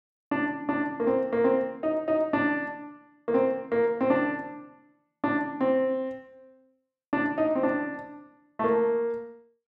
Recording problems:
none

